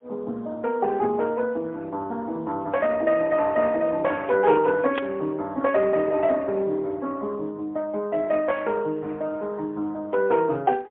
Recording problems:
telephone audio; 190 Hz to 4 kHz, AMR-NB, then MP3
burst of static; at 5 s; peak -4 dB vs average level

